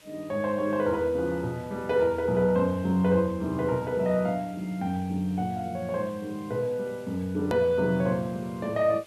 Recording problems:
background hiss; SNR 26 dB
hard cut with a click; at 7.5 s

